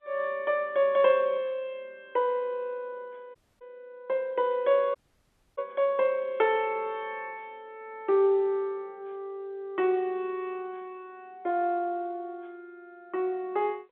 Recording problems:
telephone audio; 240 Hz to 3.8 kHz, G.711
audio cutting out; at 3.5 s and at 5 s for 0.5 s

